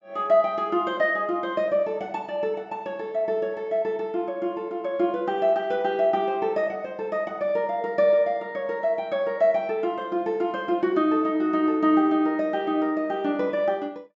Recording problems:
low-pass filter; nothing above 8 kHz

